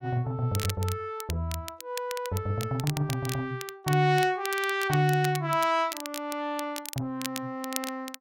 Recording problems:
crackling; vinyl, SNR 10 dB

